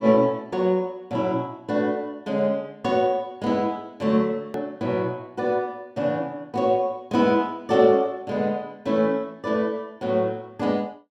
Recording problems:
hard cut with a click; at 4.5 s

